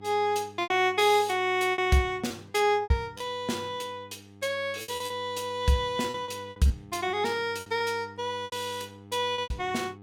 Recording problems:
electrical hum; 50 Hz, harmonics up to 1.3 kHz, SNR 22 dB
packet loss; 10% of the sound replaced, filled with repeated pitch periods

